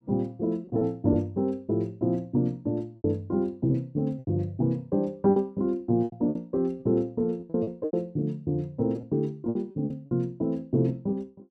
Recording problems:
lost packets; 8% of the sound replaced, filled with repeated pitch periods

